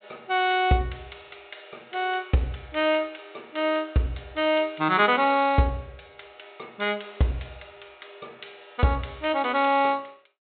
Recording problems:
low-pass filter; nothing above 4 kHz

